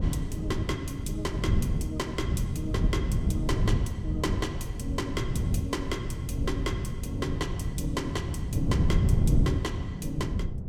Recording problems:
wind on the microphone; below 160 Hz, SNR -5 dB

